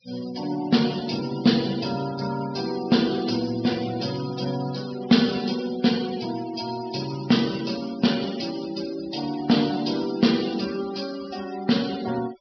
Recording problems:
treble cut off; nothing above 5.5 kHz
denoising artefacts; signal-to-artefact ratio 15 dB

